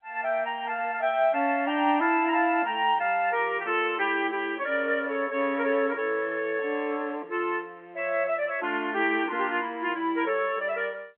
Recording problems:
phone line; 240 Hz to 3.5 kHz, G.711

